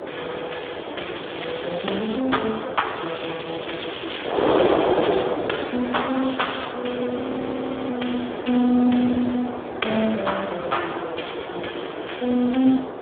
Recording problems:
telephone audio; 220 Hz to 3.6 kHz, Speex
wind noise; below 820 Hz, SNR 3 dB
crackling; from 1 to 2 s, from 3 to 5.5 s and at 6 s; loose cable, SNR 12 dB
audio freezing; at 7 s for 0.5 s

